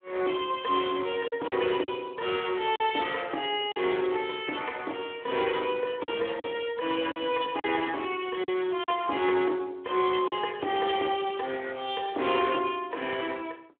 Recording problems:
telephone audio; 260 Hz to 3.5 kHz, Speex
packet loss; 4% of the sound replaced, filled with silence

